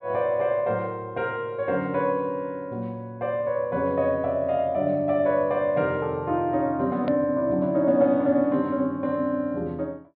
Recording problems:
low-pass filter; nothing above 4.8 kHz
edit click; at 7 s

